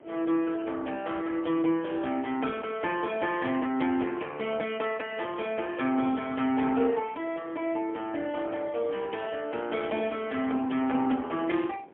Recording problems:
telephone audio; 280 Hz to 3.3 kHz, AMR-NB, then MP3
wind on the microphone; below 600 Hz, SNR 21 dB

